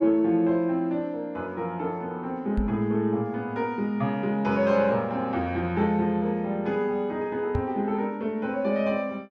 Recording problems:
microphone bump; at 2.5 s and at 7.5 s; peak +2 dB vs average level

